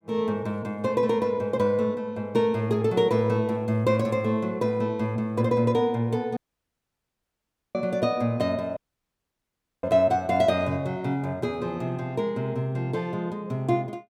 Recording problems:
dropout; at 6.5 s for 1.5 s and at 9 s for 1 s

